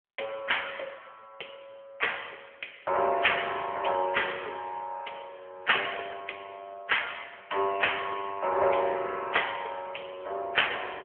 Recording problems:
phone line; 320 Hz to 3.3 kHz, AMR-NB

